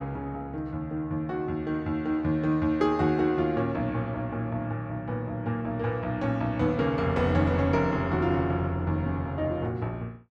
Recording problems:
none

